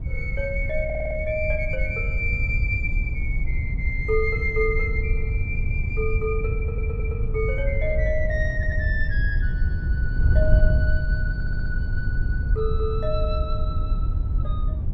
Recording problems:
wind noise; below 86 Hz, SNR -3 dB
audio stuttering; 4 times, first at 1 s

